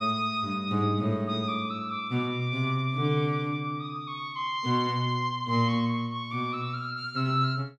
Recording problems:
none

